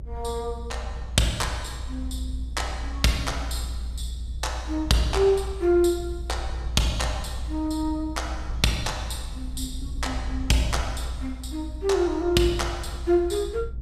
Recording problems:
rumble; below 62 Hz, strongest tone 58 Hz, SNR 8 dB

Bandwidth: 14.5 kHz